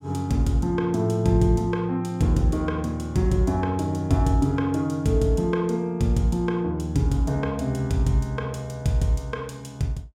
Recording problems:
none

